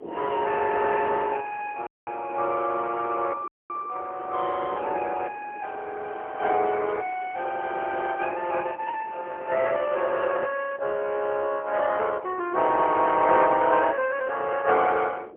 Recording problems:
phone line; 320 Hz to 3.1 kHz, AMR-NB, then MP3
wind noise; below 510 Hz, SNR 19 dB
dropout; at 2 s and at 3.5 s

